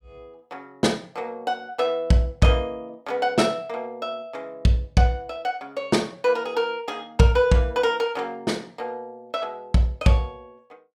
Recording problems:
none

